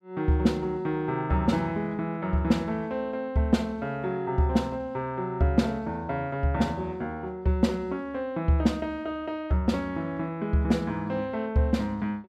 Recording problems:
none

